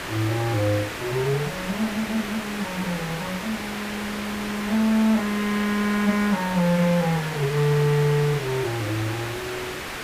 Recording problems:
background hiss; SNR 7 dB

